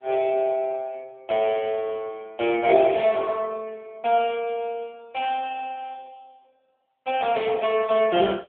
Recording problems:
telephone audio; 240 Hz to 3.4 kHz, AMR-NB

